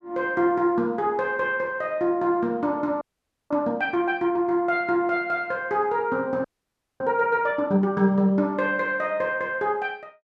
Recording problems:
audio freezing; at 3 s and at 6.5 s for 0.5 s

